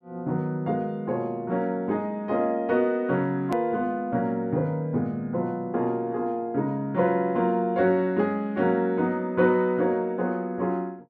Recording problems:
edit click; at 3.5 s

